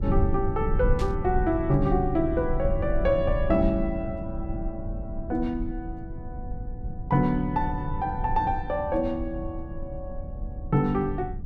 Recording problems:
rumble; below 94 Hz, SNR 6 dB
burst of static; at 1 s; peak -9 dB vs average level

